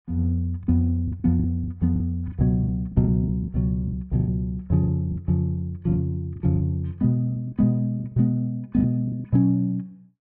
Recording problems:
lost packets; 11% of the sound replaced, filled with the last packet

